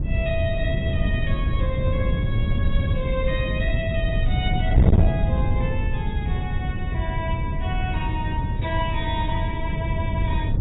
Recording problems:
codec artefacts; AAC, log-spectral distance 2 dB, nothing above 3.8 kHz
distortion; soft clipping, signal-to-distortion ratio 11 dB
wind on the microphone; below 130 Hz, SNR -6 dB

